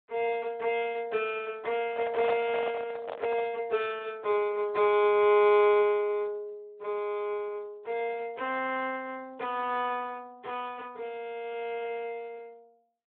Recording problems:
telephone audio; 280 Hz to 3.7 kHz, Speex
microphone handling noise; from 2 to 3.5 s; peak +1 dB vs average level

